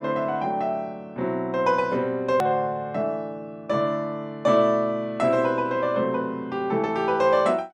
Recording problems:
edit click; at 2.5 s

